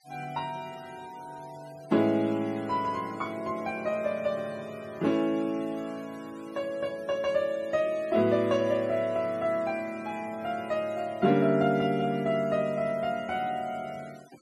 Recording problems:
noise reduction artefacts; signal-to-artefact ratio 24 dB

